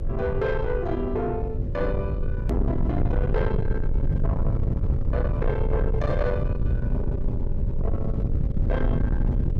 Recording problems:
distortion; soft clipping, signal-to-distortion ratio 8 dB
electrical hum; 50 Hz, harmonics up to 600 Hz, SNR 12 dB
rumble; below 120 Hz, SNR -2 dB
hard cut with a click; at 2.5 s

